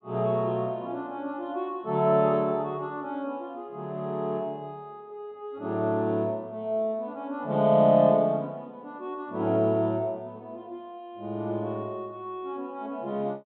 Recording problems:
treble missing; nothing above 4 kHz

